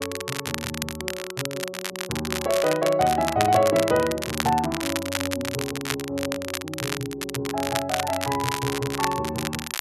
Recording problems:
crackling; vinyl, SNR 5 dB

